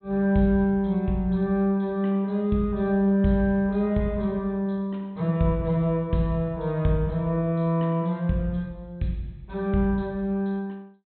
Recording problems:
treble cut off; nothing above 4 kHz

